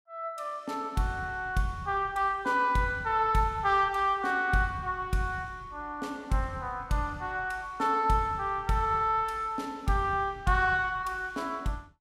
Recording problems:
none

